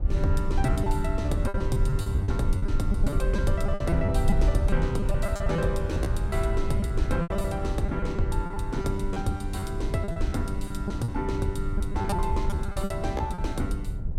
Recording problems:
low-frequency rumble; below 88 Hz, SNR -1 dB
packet loss; 12% of the sound replaced, filled with repeated pitch periods

